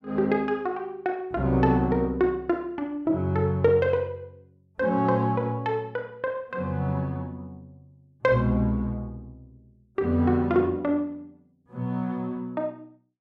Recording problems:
none

